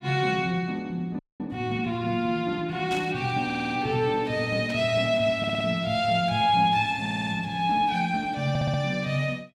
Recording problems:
frozen audio; at 1 s
static burst; at 3 s and at 4.5 s; peak -8 dB vs average level
stutter; 4 times, first at 3.5 s

